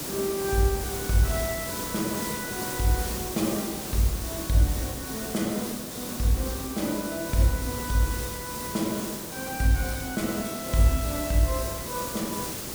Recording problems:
hiss; SNR 5 dB

